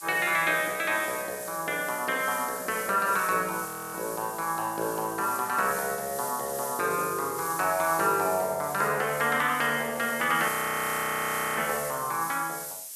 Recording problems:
hiss; SNR 9 dB
audio freezing; at 3.5 s and at 10 s for 1 s

